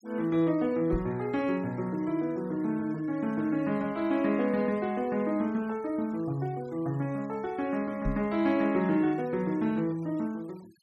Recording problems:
noise reduction artefacts; signal-to-artefact ratio 25 dB
knock on the microphone; at 1 s and at 8 s; peak 0 dB vs average level

